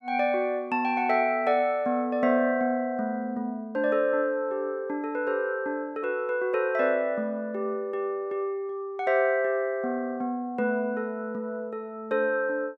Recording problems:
none

